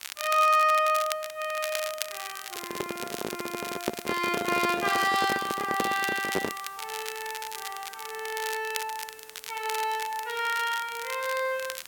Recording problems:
background hiss; slope -1 dB per octave, SNR 21 dB
crackling; vinyl, SNR 9 dB
handling noise; from 2.5 to 6.5 s; peak +4 dB vs average level

